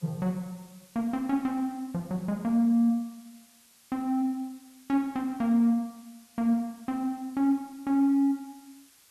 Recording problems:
hiss; slope +2 dB per octave, SNR 28 dB

